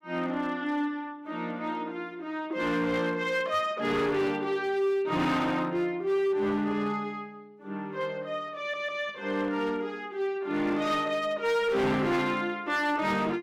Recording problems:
distortion; hard clipping, signal-to-distortion ratio 11 dB
stutter; at 8.5 s

